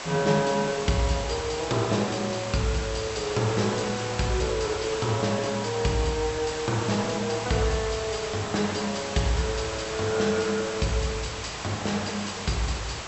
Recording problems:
treble cut off; nothing above 7.9 kHz
hiss; SNR 7 dB

